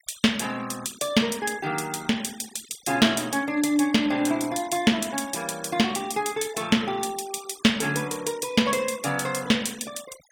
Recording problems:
denoising artefacts; signal-to-artefact ratio 19 dB

